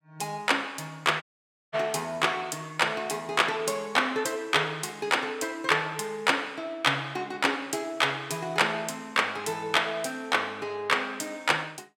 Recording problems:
audio cutting out; at 1 s for 0.5 s

